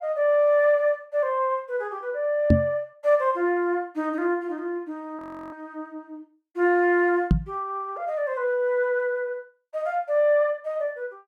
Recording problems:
microphone thump; at 2.5 s and at 7.5 s; peak +9 dB vs average level
frozen audio; at 5 s

